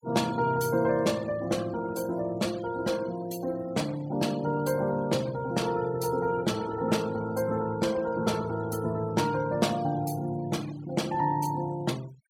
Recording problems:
denoising artefacts; signal-to-artefact ratio 19 dB

